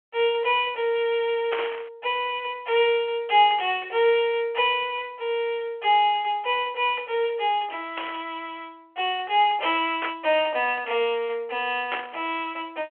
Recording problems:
telephone audio; 280 Hz to 3.3 kHz, G.726
static burst; 4 times, first at 1.5 s; peak -2 dB vs average level

